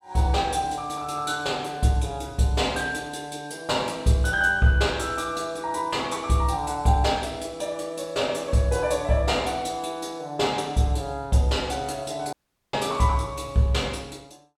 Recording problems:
dropout; at 12 s

